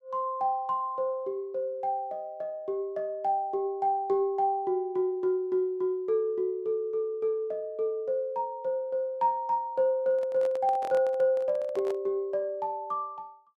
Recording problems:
microphone handling noise; from 10 to 12 s; peak -7 dB vs average level

